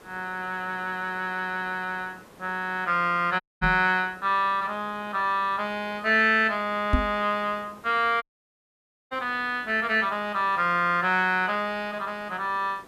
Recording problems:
background hiss; slope -6 dB per octave, SNR 25 dB
audio cutting out; at 3.5 s and at 8 s for 1 s
knock on the microphone; at 3.5 s and at 7 s; peak +6 dB vs average level

